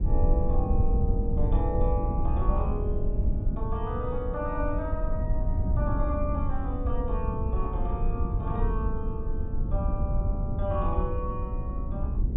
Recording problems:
treble cut off; nothing above 4 kHz
low-frequency rumble; below 86 Hz, SNR -5 dB

